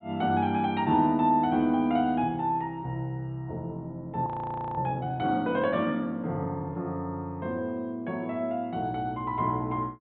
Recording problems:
low-pass filter; nothing above 4 kHz
frozen audio; at 4.5 s for 0.5 s

